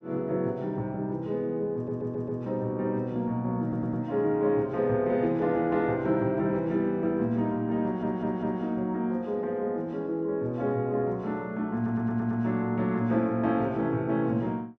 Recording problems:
audio stuttering; 4 times, first at 2 s

